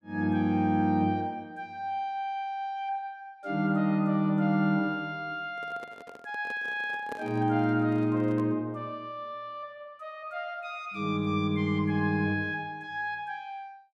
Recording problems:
handling noise; from 5.5 to 8.5 s; peak -6 dB vs average level

